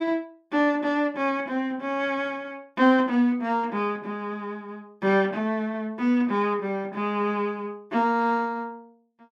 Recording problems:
none

